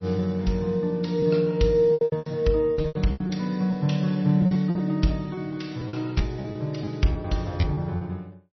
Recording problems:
codec artefacts; MP3, log-spectral distance 2 dB, nothing above 5.8 kHz
packet loss; 11% of the sound replaced, filled with repeated pitch periods

